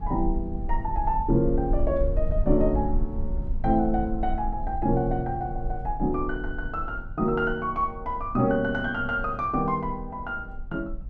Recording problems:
rumble; below 52 Hz, strongest tone 22 Hz, SNR 7 dB

